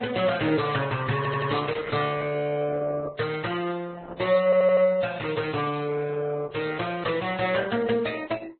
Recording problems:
lossy codec; Opus, then Vorbis, log-spectral distance 5 dB, nothing above 4.1 kHz
stutter; at 1 s and at 4.5 s

